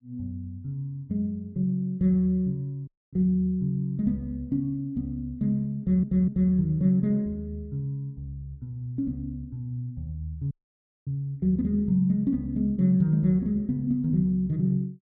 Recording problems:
audio cutting out; at 3 s and at 11 s for 0.5 s
audio stuttering; at 6 s

